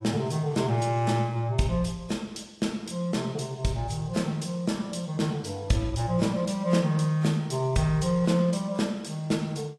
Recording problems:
codec artefacts; AAC, log-spectral distance 2 dB, nothing above 11 kHz

